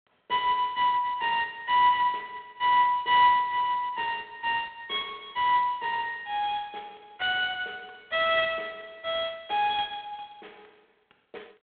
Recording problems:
phone line; 260 Hz to 3.7 kHz, G.726

